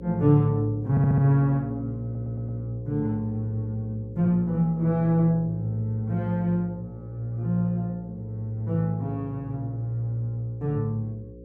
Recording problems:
electrical hum; 60 Hz, harmonics up to 540 Hz, SNR 17 dB
audio stuttering; at 1 s and at 2 s

